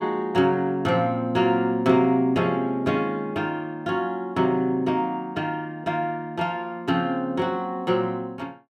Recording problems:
none

